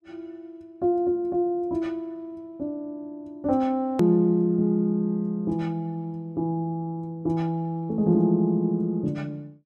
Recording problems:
click at an edit; at 4 s

